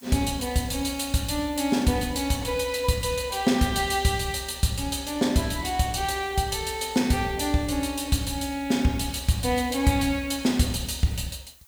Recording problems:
background hiss; SNR 25 dB

